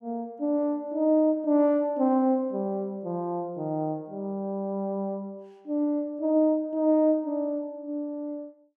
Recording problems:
none

